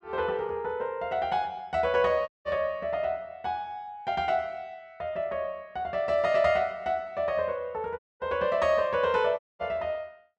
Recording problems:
dropout; at 2.5 s, at 8 s and at 9.5 s

